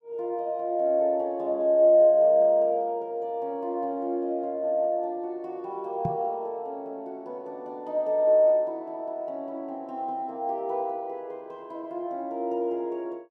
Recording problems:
knock on the microphone; at 6 s; peak -1 dB vs average level

